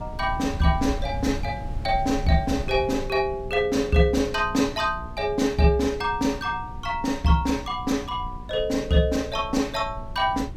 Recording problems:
hum; 60 Hz, harmonics up to 840 Hz, SNR 21 dB
wind on the microphone; below 100 Hz, SNR 13 dB

